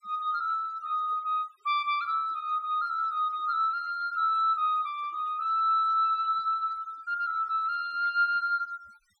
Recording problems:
denoising artefacts; signal-to-artefact ratio 27 dB

